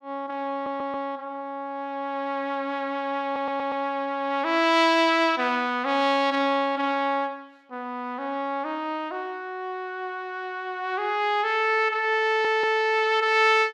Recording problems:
audio stuttering; at 0.5 s, at 3 s and at 12 s

